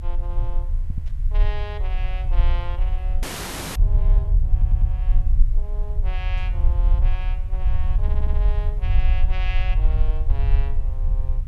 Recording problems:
hiss; SNR 22 dB
rumble; below 54 Hz, SNR -15 dB
stutter; at 1 s, at 4.5 s and at 8 s
burst of static; at 1 s and at 6.5 s; peak -10 dB vs average level
frozen audio; at 3 s for 0.5 s

